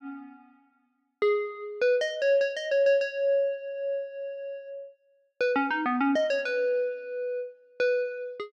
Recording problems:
none

